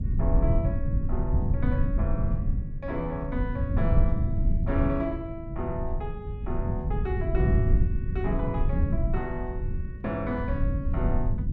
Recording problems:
hum; 50 Hz, harmonics up to 600 Hz, SNR 25 dB
rumble; below 110 Hz, SNR -5 dB

